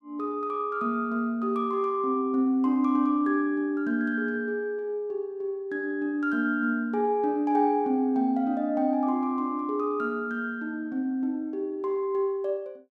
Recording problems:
none

